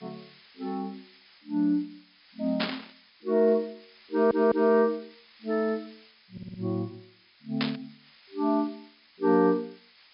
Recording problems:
low-pass filter; nothing above 5.5 kHz
hiss; SNR 27 dB
static burst; at 2.5 s and at 7.5 s; peak +1 dB vs average level
audio stuttering; at 4 s and at 6.5 s

